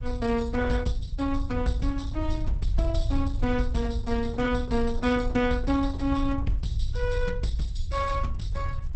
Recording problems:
codec artefacts; Opus, log-spectral distance 3 dB, nothing above 8.2 kHz
rumble; below 74 Hz, SNR 3 dB

